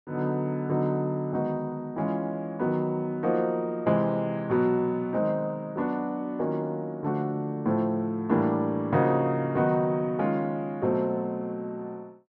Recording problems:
low-pass filter; nothing above 6.9 kHz

